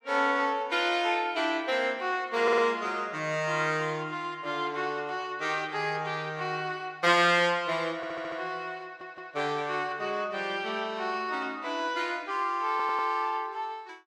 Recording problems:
stutter; 4 times, first at 2.5 s

